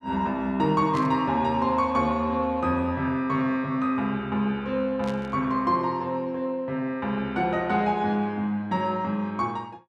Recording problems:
static burst; at 1 s and at 5 s; peak -11 dB vs average level

